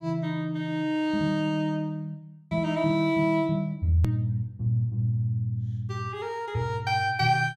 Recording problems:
hard cut with a click; at 4 s

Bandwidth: 15 kHz